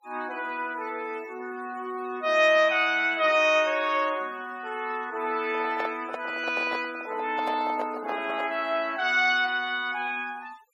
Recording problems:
denoising artefacts; signal-to-artefact ratio 23 dB
microphone handling noise; from 5.5 to 8.5 s; peak -4 dB vs average level

